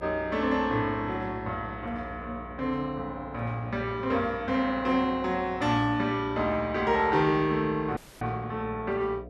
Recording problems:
hum; 60 Hz, harmonics up to 720 Hz, SNR 17 dB
audio cutting out; at 8 s

